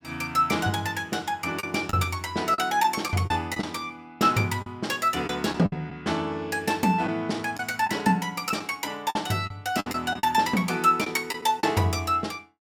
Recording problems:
lost packets; 6% of the sound replaced, filled with the last packet

